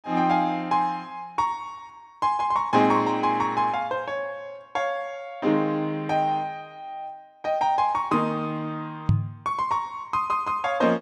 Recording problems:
microphone thump; at 9 s; peak +7 dB vs average level

